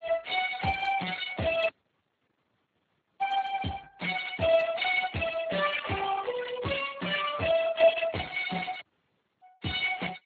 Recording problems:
lossy codec; Opus, then Speex, log-spectral distance 6 dB, nothing above 3.7 kHz
audio cutting out; at 1.5 s for 1.5 s and at 9 s for 0.5 s

